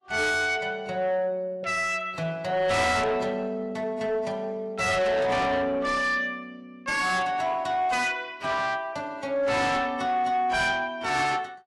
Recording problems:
codec artefacts; AAC, log-spectral distance 2 dB, nothing above 11.3 kHz
distortion; soft clipping, signal-to-distortion ratio 8 dB

